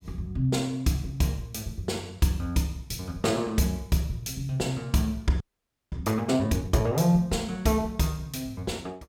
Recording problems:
frozen audio; at 5.5 s for 0.5 s

